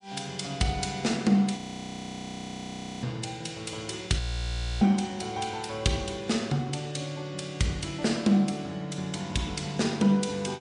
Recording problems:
codec artefacts; MP3, log-spectral distance 4 dB, nothing above 8.7 kHz
frozen audio; at 1.5 s for 1.5 s and at 4 s for 0.5 s

